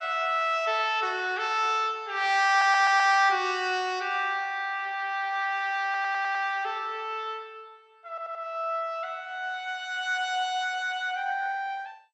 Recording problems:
lossy codec; MP2, log-spectral distance 3 dB, nothing above 7.3 kHz
stutter; at 2.5 s, at 6 s and at 8 s

